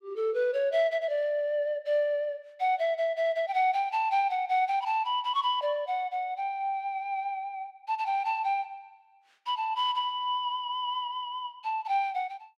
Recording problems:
none

